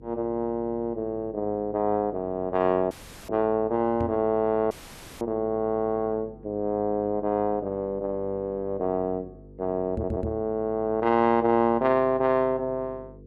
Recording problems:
hum; 50 Hz, harmonics up to 500 Hz, SNR 22 dB
dropout; at 3 s and at 4.5 s for 0.5 s
microphone thump; at 4 s and at 10 s; peak -2 dB vs average level
stutter; at 10 s

